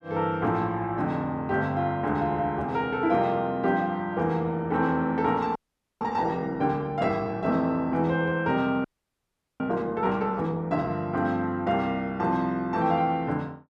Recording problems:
frozen audio; at 5.5 s and at 9 s for 1 s

